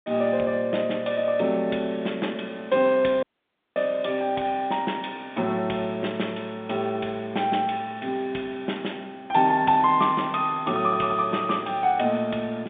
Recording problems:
phone line; 150 Hz to 3.7 kHz, G.711
dropout; at 3 s for 0.5 s

